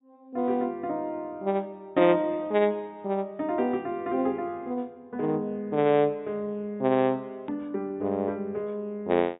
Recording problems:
treble missing; nothing above 4 kHz
hard cut with a click; at 7.5 s

